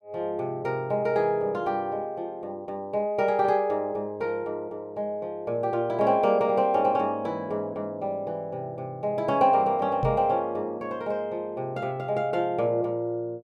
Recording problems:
microphone bump; at 10 s; peak +1 dB vs average level

